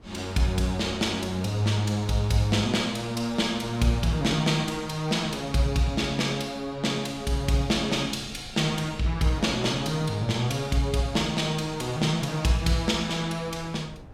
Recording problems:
wind on the microphone; below 320 Hz, SNR 21 dB

